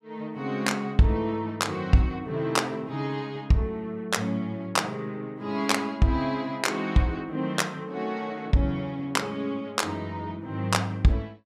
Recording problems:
none

